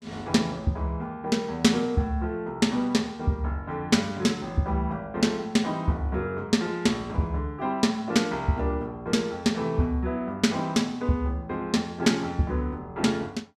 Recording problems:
none

